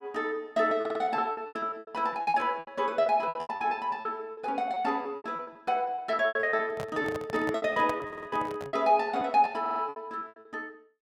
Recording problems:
lost packets; 19% of the sound replaced, filled with repeated pitch periods
stutter; at 1 s, at 8 s and at 9.5 s
microphone handling noise; from 6.5 to 9 s; peak -3 dB vs average level

